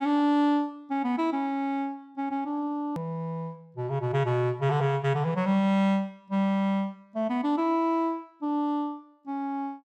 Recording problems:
hard cut with a click; at 3 s

